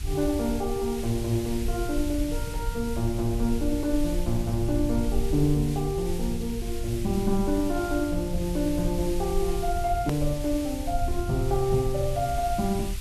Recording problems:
background hiss; SNR 14 dB
rumble; below 64 Hz, SNR 7 dB
click at an edit; at 10 s

